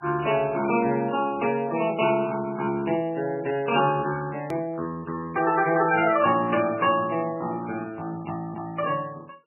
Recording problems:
lossy codec; MP3, log-spectral distance 3 dB, nothing above 2.4 kHz
hard cut with a click; at 4.5 s

